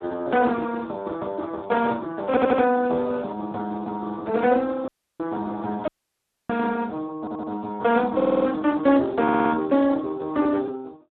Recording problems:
telephone audio; 220 Hz to 2 kHz, Speex
audio stuttering; 4 times, first at 2.5 s
dropout; at 5 s and at 6 s for 0.5 s

